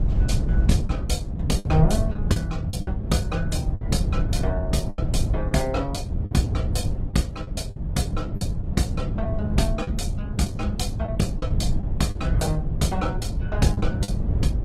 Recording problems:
codec artefacts; Opus, log-spectral distance 2 dB, nothing above 18.9 kHz
low-frequency rumble; below 120 Hz, SNR -1 dB
packet loss; 7% of the sound replaced, filled with the last packet

